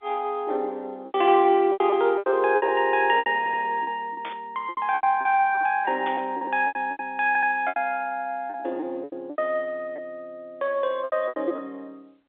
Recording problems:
telephone audio; 300 Hz to 3.7 kHz, G.711
lost packets; 13% of the sound replaced, filled with repeated pitch periods
stutter; at 3.5 s and at 7.5 s
burst of static; at 4.5 s and at 6 s; peak -8 dB vs average level

